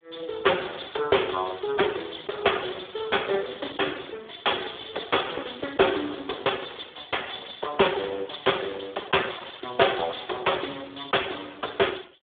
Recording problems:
telephone audio; 320 Hz to 3.6 kHz, Speex

